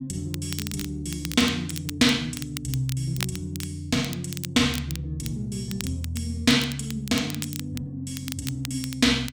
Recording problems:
crackling; vinyl, SNR 11 dB

